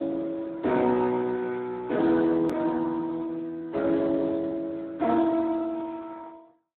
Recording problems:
telephone audio; 170 Hz to 2.1 kHz, Speex
click at an edit; at 2.5 s

